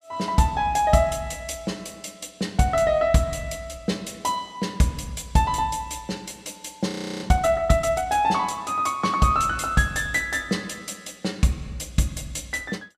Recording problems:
frozen audio; at 7 s

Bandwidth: 15 kHz